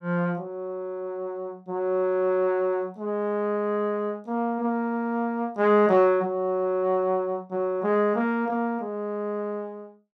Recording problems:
none

